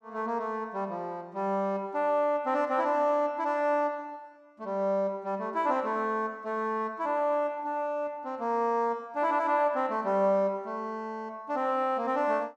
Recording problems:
none

